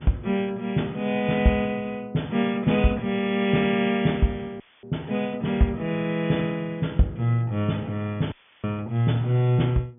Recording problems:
low-pass filter; nothing above 3.5 kHz
mains hum; 60 Hz, harmonics up to 960 Hz, SNR 26 dB
dropout; at 4.5 s and at 8.5 s; filled with static

